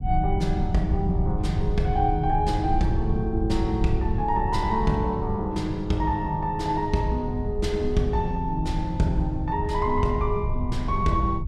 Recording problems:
rumble; below 98 Hz, SNR 5 dB

